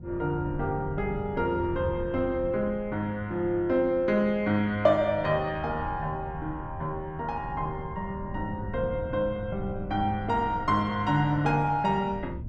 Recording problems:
wind on the microphone; below 170 Hz, SNR 13 dB

